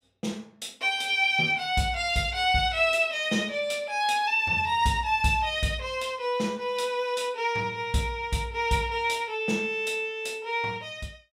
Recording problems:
none

